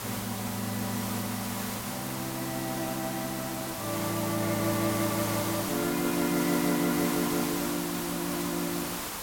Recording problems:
hiss; SNR 3 dB

